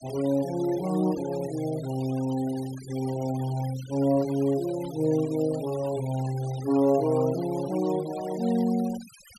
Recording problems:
denoising artefacts; signal-to-artefact ratio 18 dB

